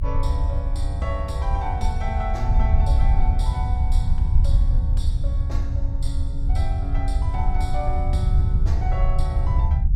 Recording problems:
low-frequency rumble; below 74 Hz, SNR -9 dB

